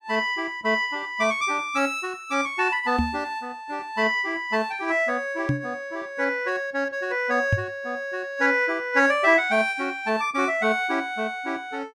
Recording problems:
microphone thump; at 3 s, at 5.5 s and at 7.5 s; peak +5 dB vs average level

